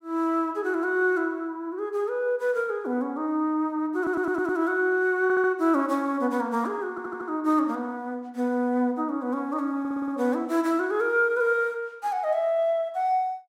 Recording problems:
audio stuttering; 4 times, first at 4 s

